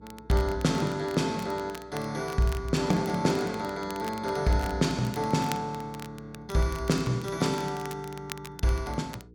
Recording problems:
electrical hum; 60 Hz, harmonics up to 480 Hz, SNR 24 dB
crackling; vinyl, SNR 17 dB

